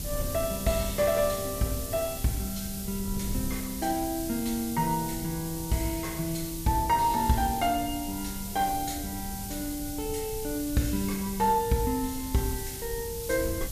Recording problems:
background hiss; SNR 8 dB
wind noise; below 120 Hz, SNR 12 dB

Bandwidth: 14.5 kHz